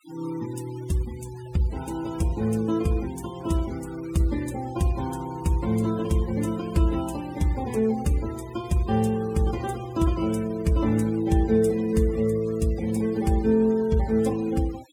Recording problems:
noise reduction artefacts; signal-to-artefact ratio 20 dB

